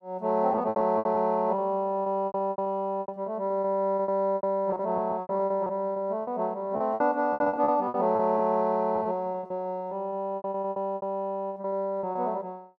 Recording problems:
packet loss; 17% of the sound replaced, filled with repeated pitch periods

